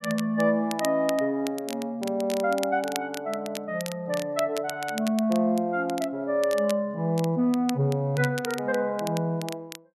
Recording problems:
crackling; vinyl, SNR 14 dB

